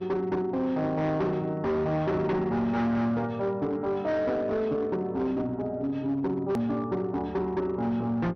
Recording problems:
treble missing; nothing above 6.1 kHz
distorted audio; hard clipping, signal-to-distortion ratio 10 dB
hum; 50 Hz, harmonics up to 1.2 kHz, SNR 24 dB
edit click; at 6.5 s

